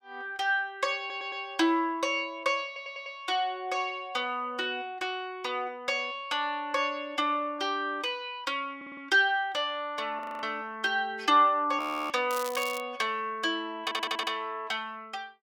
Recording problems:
stutter; 4 times, first at 1 s
audio freezing; at 10 s and at 12 s
crackling; at 12 s; loose cable, SNR 11 dB

